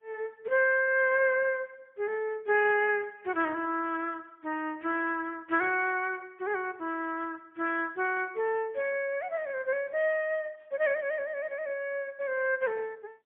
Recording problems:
phone line; 320 Hz to 3.3 kHz, AMR-NB, then MP3

